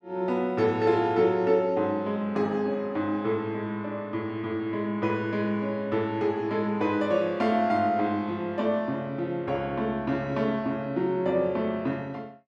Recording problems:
none

